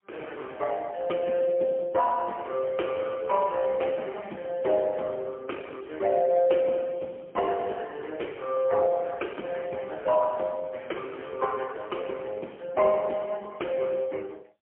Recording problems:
phone line; 260 Hz to 3.8 kHz, AMR-NB, then MP3

